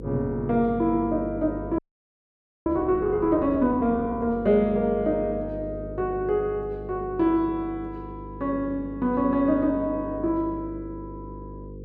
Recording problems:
electrical hum; 50 Hz, harmonics up to 500 Hz, SNR 13 dB
frozen audio; at 2 s for 1 s

